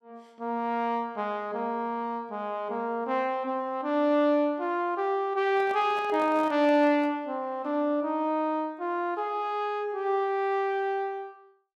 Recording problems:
microphone handling noise; from 5.5 to 7 s; peak -10 dB vs average level

